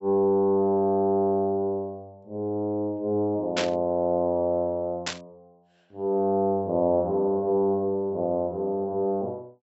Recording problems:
treble cut off; nothing above 7.7 kHz
static burst; at 3.5 s and at 5 s; peak +2 dB vs average level

